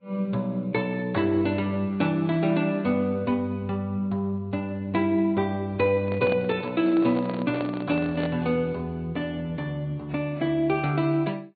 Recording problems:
treble cut off; nothing above 4 kHz
lossy codec; Vorbis, log-spectral distance 2 dB
microphone handling noise; from 6 to 8.5 s; peak -4 dB vs average level

